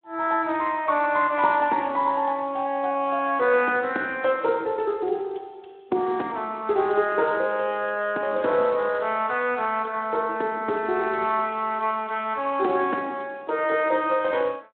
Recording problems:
phone line; 240 Hz to 3.7 kHz, Speex

